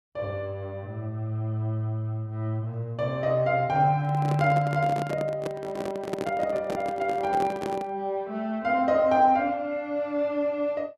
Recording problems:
handling noise; from 4 to 8 s; peak -1 dB vs average level

